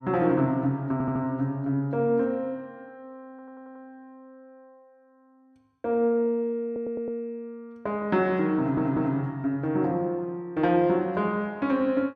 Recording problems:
stutter; 4 times, first at 1 s

